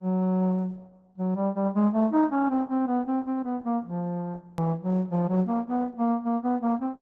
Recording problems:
lossy compression; Opus, log-spectral distance 2 dB, nothing above 13.1 kHz
edit click; at 4.5 s

